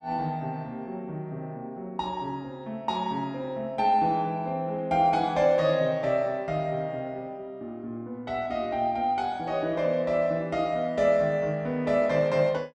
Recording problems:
none

